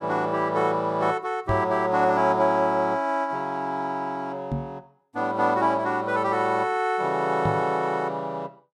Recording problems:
knock on the microphone; at 1.5 s, at 4.5 s and at 7.5 s; peak -1 dB vs average level

